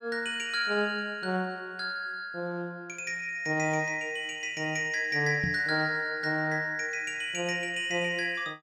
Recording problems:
microphone thump; at 5.5 s; peak 0 dB vs average level

